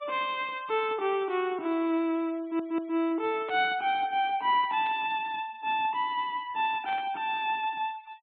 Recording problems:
low-pass filter; nothing above 4 kHz
noise reduction artefacts; signal-to-artefact ratio 27 dB
audio stuttering; at 2.5 s
burst of static; at 3.5 s, at 5 s and at 7 s; peak -13 dB vs average level

